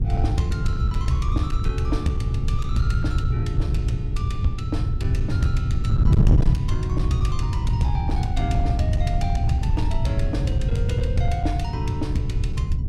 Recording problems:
distortion; hard clipping, uneven, signal-to-distortion ratio 11 dB
hum; 50 Hz, harmonics up to 500 Hz, SNR 24 dB
wind noise; below 120 Hz, SNR -7 dB

